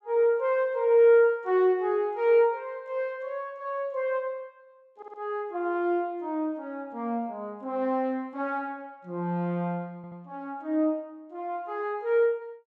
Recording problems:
stutter; at 5 s and at 10 s

